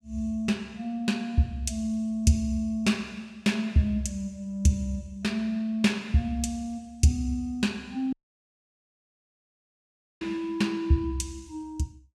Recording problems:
dropout; at 8 s for 2 s

